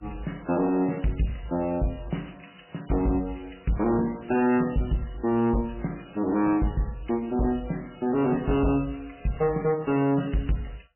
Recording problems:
lossy compression; MP3, log-spectral distance 7 dB, nothing above 2.9 kHz
distortion; hard clipping, uneven, signal-to-distortion ratio 10 dB

